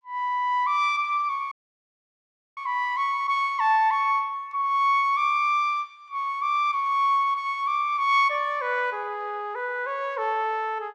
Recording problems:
dropout; at 1.5 s for 1 s

